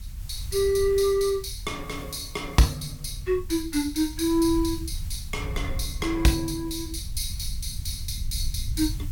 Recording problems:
hiss; slope +1 dB per octave, SNR 23 dB
low-frequency rumble; below 82 Hz, SNR 10 dB

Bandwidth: 17 kHz